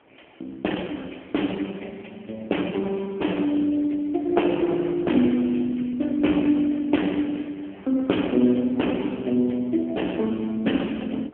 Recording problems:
phone line; 190 Hz to 3.3 kHz, AMR-NB
wind on the microphone; below 1.3 kHz, SNR 27 dB

